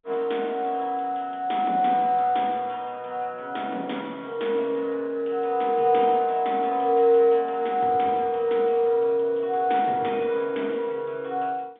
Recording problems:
telephone audio; 240 Hz to 3.6 kHz, G.711

